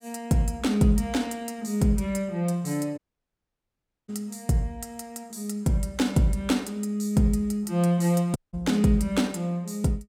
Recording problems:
audio cutting out; at 3 s for 1 s and at 8.5 s

